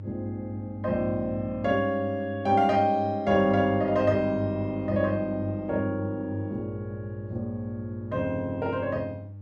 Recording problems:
electrical hum; 50 Hz, harmonics up to 500 Hz, SNR 12 dB

